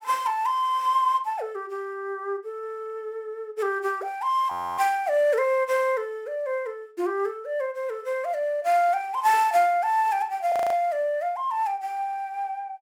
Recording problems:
audio freezing; at 4.5 s and at 11 s

